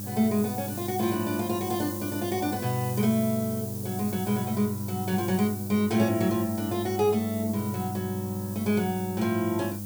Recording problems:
hum; 50 Hz, harmonics up to 800 Hz, SNR 7 dB
background hiss; SNR 10 dB

